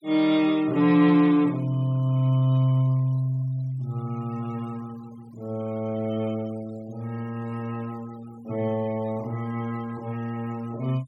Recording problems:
noise reduction artefacts; signal-to-artefact ratio 25 dB

